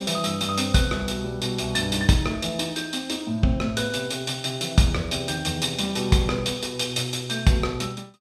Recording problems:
none

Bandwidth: 15 kHz